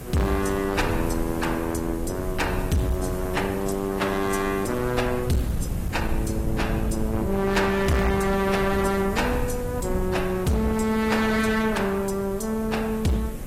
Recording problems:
codec artefacts; AAC, log-spectral distance 4 dB
distorted audio; hard clipping, uneven, signal-to-distortion ratio 10 dB
background hiss; slope -6 dB per octave, SNR 13 dB
wind noise; below 130 Hz, SNR 9 dB

